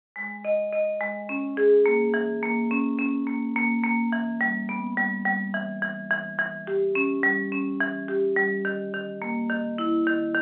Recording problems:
telephone audio; 260 Hz to 3.4 kHz, G.711

